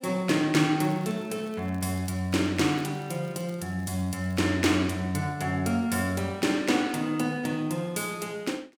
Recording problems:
crackle; from 1 to 4.5 s; loose cable, SNR 29 dB

